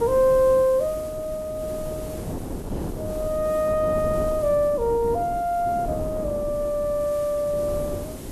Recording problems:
background hiss; slope 0 dB per octave, SNR 21 dB
wind on the microphone; below 390 Hz, SNR 11 dB

